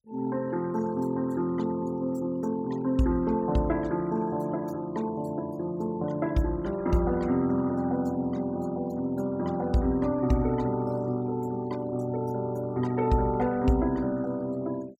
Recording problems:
noise reduction artefacts; signal-to-artefact ratio 23 dB

